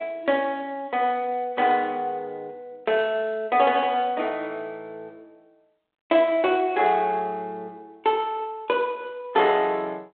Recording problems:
phone line; 300 Hz to 3.6 kHz, G.726

